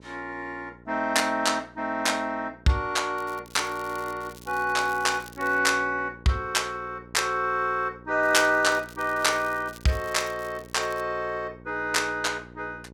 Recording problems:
hum; 60 Hz, harmonics up to 1.1 kHz, SNR 22 dB
crackling; from 3 to 5.5 s and from 8 to 11 s; loose cable, SNR 22 dB

